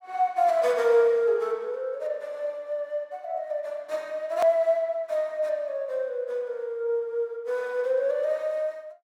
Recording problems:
click at an edit; at 4.5 s

